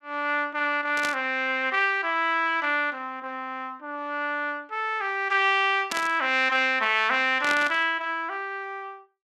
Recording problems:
burst of static; at 1 s, at 6 s and at 7.5 s; peak -1 dB vs average level

